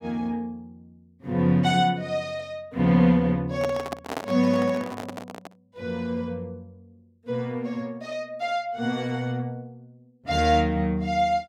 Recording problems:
handling noise; from 3.5 to 5.5 s; peak -2 dB vs average level

